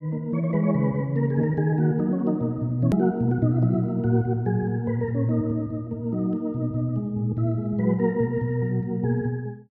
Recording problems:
hard cut with a click; at 3 s

